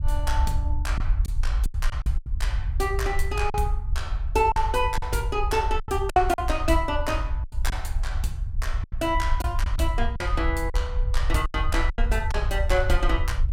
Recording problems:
low-frequency rumble; below 64 Hz, SNR 1 dB
packet loss; 8% of the sound replaced, filled with silence

